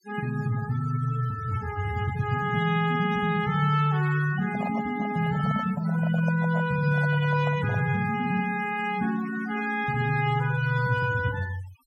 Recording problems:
denoising artefacts; signal-to-artefact ratio 14 dB
microphone handling noise; from 4.5 to 8 s; peak -7 dB vs average level

